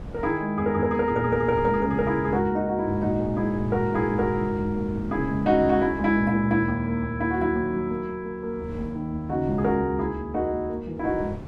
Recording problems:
wind on the microphone; below 250 Hz, SNR 15 dB

